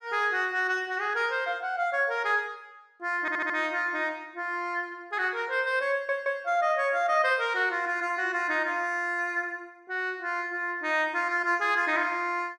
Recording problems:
audio stuttering; at 3 s and at 6 s

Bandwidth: 12.5 kHz